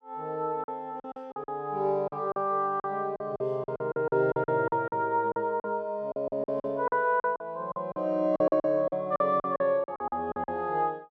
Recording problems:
lost packets; 15% of the sound replaced, filled with silence

